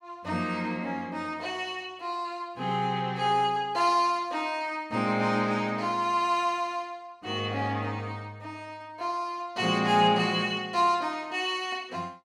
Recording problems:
none

